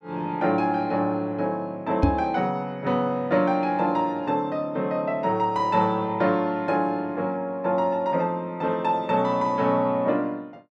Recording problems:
knock on the microphone; at 2 s; peak +8 dB vs average level

